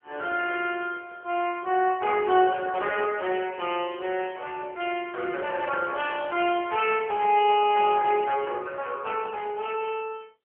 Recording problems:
telephone audio; 300 Hz to 3.3 kHz, AMR-NB

